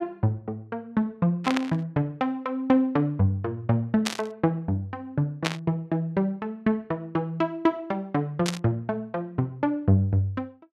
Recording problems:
burst of static; 4 times, first at 1.5 s; peak +4 dB vs average level

